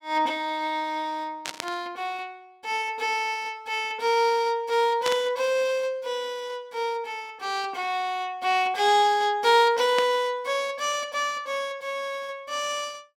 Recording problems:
burst of static; at 1.5 s, at 5 s and at 10 s; peak +1 dB vs average level

